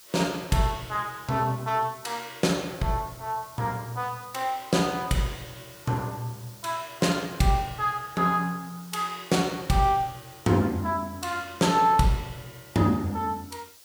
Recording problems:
background hiss; slope +2 dB per octave, SNR 21 dB

